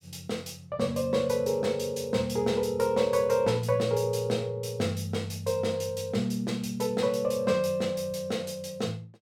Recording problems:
none

